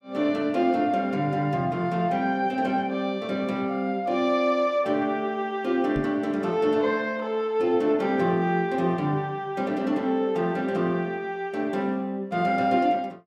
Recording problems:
microphone bump; at 6 s; peak -2 dB vs average level

